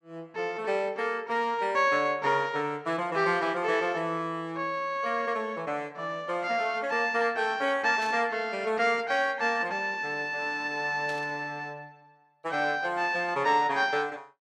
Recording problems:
static burst; at 8 s and at 11 s; peak -11 dB vs average level

